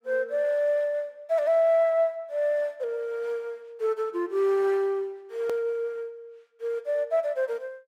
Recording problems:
hard cut with a click; at 5.5 s

